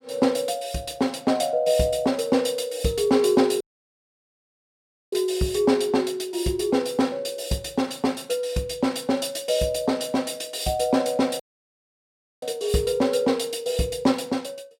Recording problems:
dropout; at 3.5 s for 1.5 s and at 11 s for 1 s

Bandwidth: 16 kHz